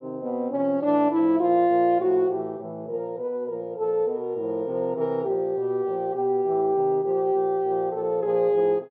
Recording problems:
none

